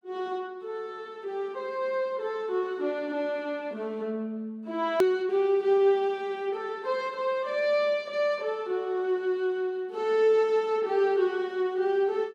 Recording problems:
click at an edit; at 5 s

